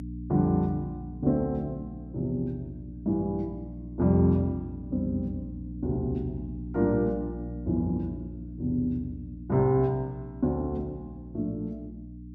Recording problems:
hum; 60 Hz, harmonics up to 300 Hz, SNR 11 dB

